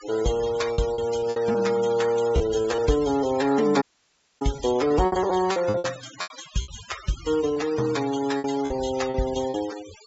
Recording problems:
low-pass filter; nothing above 8 kHz
noise reduction artefacts; signal-to-artefact ratio 15 dB
lost packets; 9% of the sound replaced, filled with repeated pitch periods
audio cutting out; at 4 s for 0.5 s

